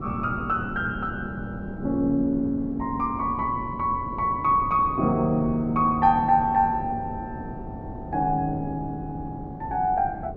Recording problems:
wind noise; below 310 Hz, SNR 12 dB

